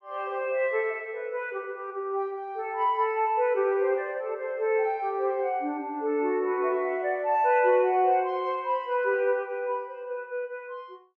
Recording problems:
none

